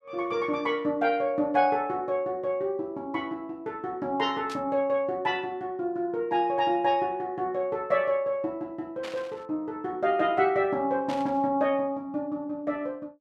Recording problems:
burst of static; at 4.5 s, at 9 s and at 11 s; peak -8 dB vs average level

